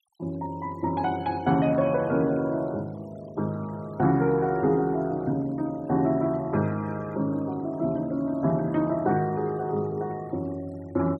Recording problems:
denoising artefacts; signal-to-artefact ratio 26 dB

